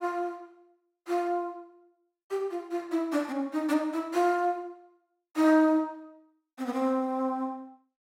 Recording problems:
none

